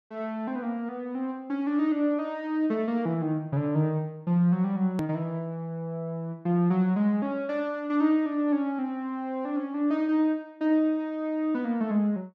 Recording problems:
hard cut with a click; at 5 s

